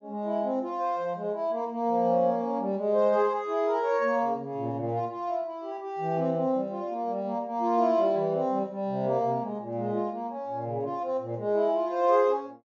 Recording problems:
treble cut off; nothing above 7.2 kHz

